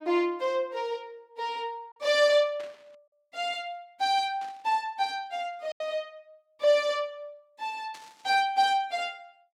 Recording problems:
packet loss; 1.1% of the sound replaced, filled with silence
static burst; at 2.5 s, at 4.5 s and at 8 s; peak -14 dB vs average level

